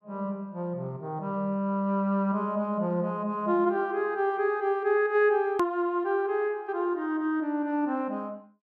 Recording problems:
edit click; at 5.5 s

